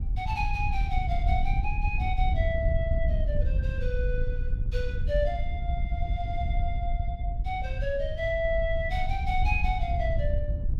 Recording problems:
wind noise; below 74 Hz, SNR -2 dB

